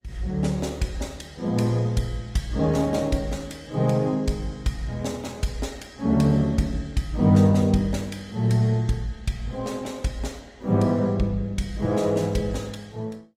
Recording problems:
codec artefacts; Opus, log-spectral distance 3 dB

